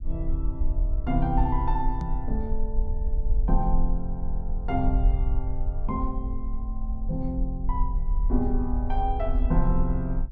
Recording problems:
rumble; below 48 Hz, SNR -2 dB
microphone bump; at 2 s; peak +5 dB vs average level

